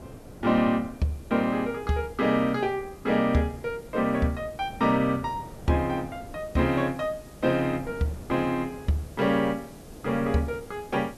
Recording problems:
hiss; slope 0 dB per octave, SNR 27 dB
wind on the microphone; below 450 Hz, SNR 18 dB

